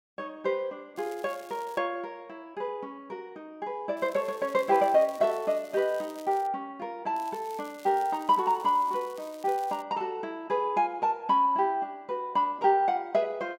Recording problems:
crackle; at 1 s, from 4 to 6.5 s and from 7 to 10 s; loose cable, SNR 24 dB

